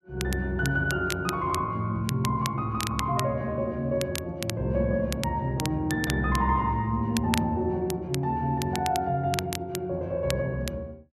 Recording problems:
crackle; vinyl, SNR 10 dB

